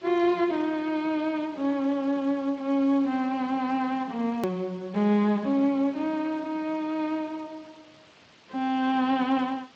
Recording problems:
lossy compression; Speex, log-spectral distance 3 dB, nothing above 20.1 kHz
background hiss; SNR 27 dB
click at an edit; at 4.5 s

